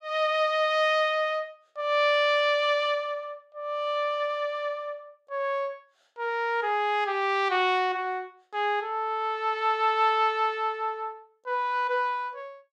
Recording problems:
none

